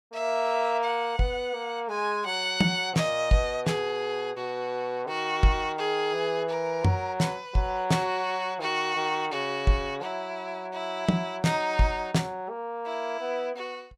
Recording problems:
none

